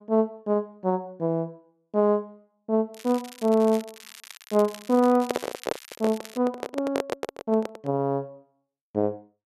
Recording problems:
crackle; from 3 to 6.5 s; loose cable, SNR 18 dB
handling noise; from 5 to 8 s; peak +2 dB vs average level

